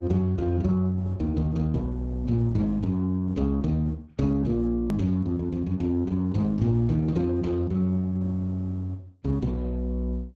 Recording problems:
codec artefacts; Opus, log-spectral distance 2 dB, nothing above 13.1 kHz
hard cut with a click; at 5 s

